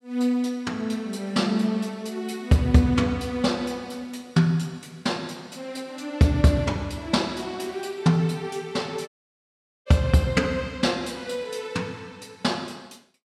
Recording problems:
dropout; at 9 s for 1 s

